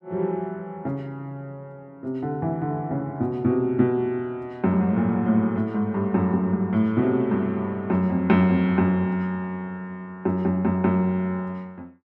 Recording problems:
none

